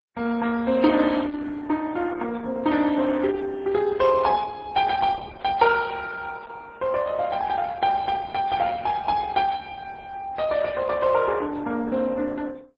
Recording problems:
codec artefacts; MP3, then Opus, log-spectral distance 3 dB

